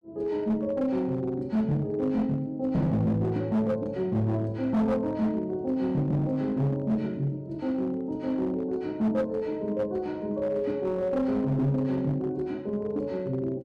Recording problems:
distorted audio; hard clipping, uneven, signal-to-distortion ratio 11 dB

